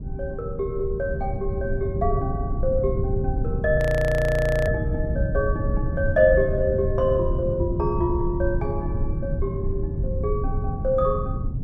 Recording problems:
rumble; below 130 Hz, SNR 2 dB
frozen audio; at 4 s for 1 s

